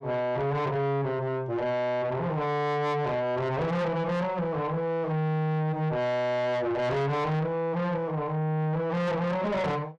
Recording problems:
distorted audio; soft clipping, signal-to-distortion ratio 8 dB

